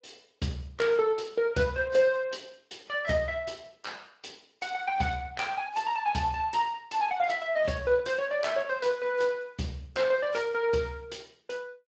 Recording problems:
lossy compression; AAC, then Speex, log-spectral distance 5 dB, nothing above 7.3 kHz

